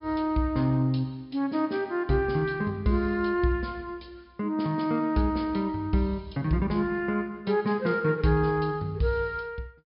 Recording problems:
treble missing; nothing above 5.5 kHz

